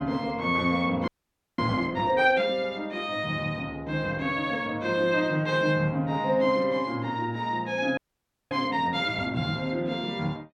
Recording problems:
frozen audio; at 1 s for 0.5 s and at 8 s for 0.5 s

